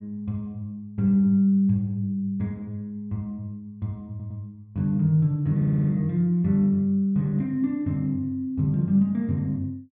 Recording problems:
stutter; at 4 s and at 5.5 s

